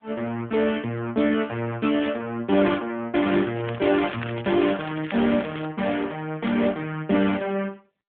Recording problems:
telephone audio; 150 Hz to 3.5 kHz, AMR-NB
crackle; from 3.5 to 5.5 s; loose cable, SNR 15 dB

